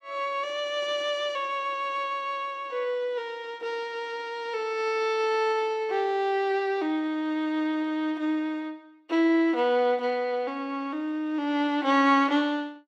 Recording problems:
none

